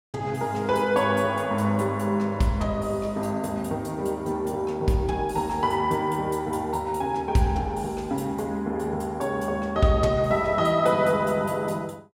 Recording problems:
none

